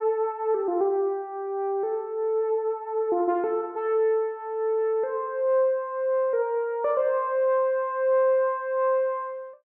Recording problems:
none

